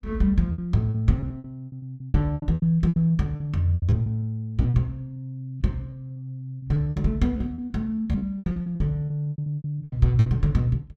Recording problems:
lost packets; 19% of the sound replaced, filled with repeated pitch periods

